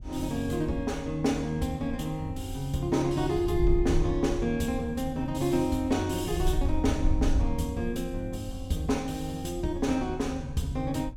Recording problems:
wind on the microphone; below 62 Hz, SNR 8 dB

